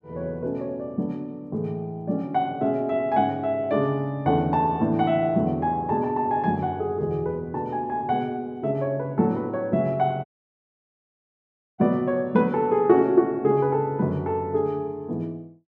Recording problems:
dropout; at 10 s for 1.5 s

